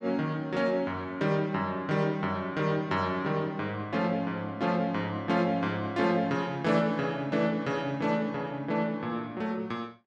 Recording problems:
none

